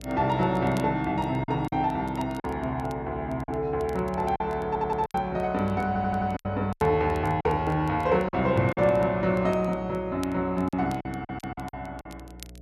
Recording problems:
hum; 60 Hz, harmonics up to 660 Hz, SNR 19 dB
crackling; vinyl, SNR 27 dB
lost packets; 7% of the sound replaced, filled with silence
stutter; at 4.5 s, at 6 s and at 11 s

